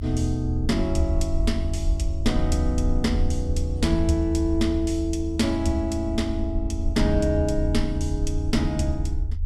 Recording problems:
rumble; below 80 Hz, SNR 3 dB

